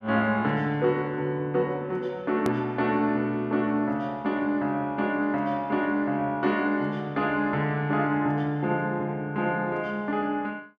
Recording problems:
click at an edit; at 2.5 s

